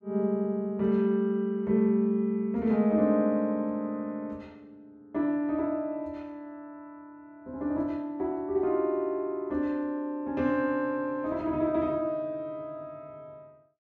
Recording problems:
none

